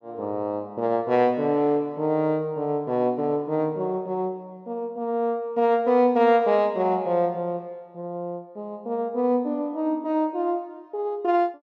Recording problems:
none

